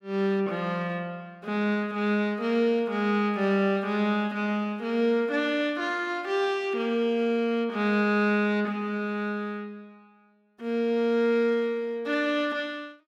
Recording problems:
none

